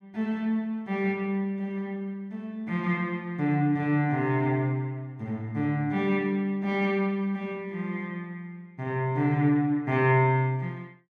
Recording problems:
none

